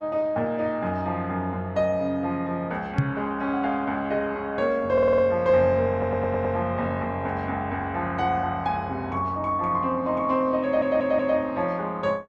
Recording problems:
lossy compression; Opus, log-spectral distance 2 dB
microphone bump; at 3 s; peak +6 dB vs average level
audio stuttering; at 5 s, at 6 s and at 11 s

